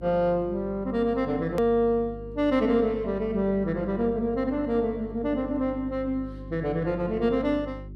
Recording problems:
hum; 50 Hz, harmonics up to 400 Hz, SNR 16 dB
hard cut with a click; at 1.5 s

